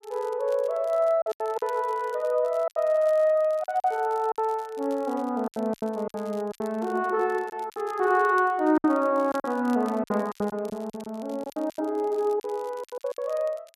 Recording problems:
crackling; vinyl, SNR 27 dB
lost packets; 11% of the sound replaced, filled with silence

